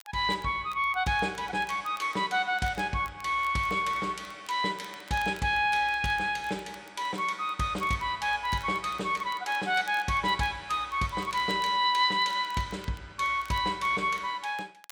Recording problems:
crackle; vinyl, SNR 26 dB

